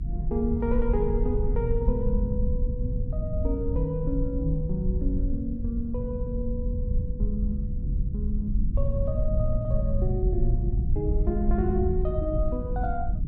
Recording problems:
rumble; below 72 Hz, SNR -2 dB

